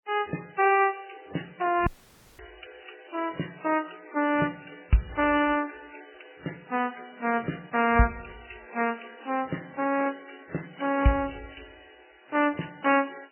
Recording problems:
lossy codec; AAC, then MP3, log-spectral distance 11 dB, nothing above 2.5 kHz
audio cutting out; at 2 s for 0.5 s

